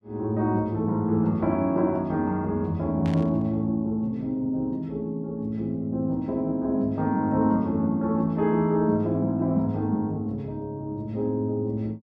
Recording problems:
burst of static; at 3 s; peak -12 dB vs average level

